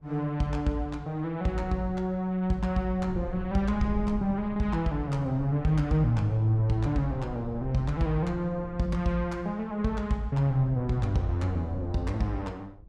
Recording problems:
wind on the microphone; below 120 Hz, SNR 14 dB

